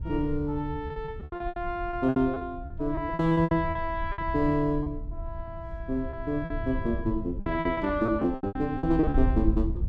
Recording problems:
rumble; below 78 Hz, SNR 8 dB
packet loss; 15% of the sound replaced, filled with repeated pitch periods

